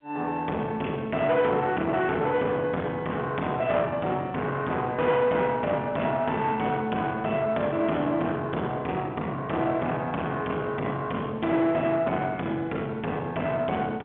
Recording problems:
phone line; 220 Hz to 3.4 kHz, G.711
distortion; soft clipping, signal-to-distortion ratio 11 dB

